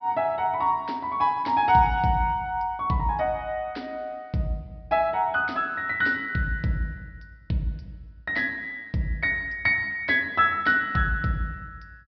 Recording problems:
low-pass filter; nothing above 5.5 kHz

